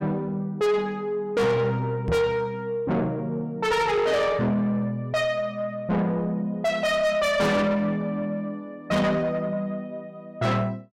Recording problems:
distortion; soft clipping, signal-to-distortion ratio 7 dB
microphone thump; at 2 s; peak +1 dB vs average level

